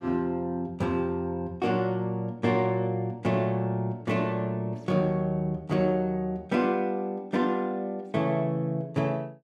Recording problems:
none

